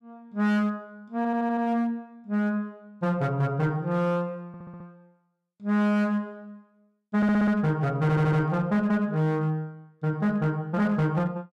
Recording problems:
distortion; hard clipping, uneven, signal-to-distortion ratio 12 dB
stutter; 4 times, first at 1 s

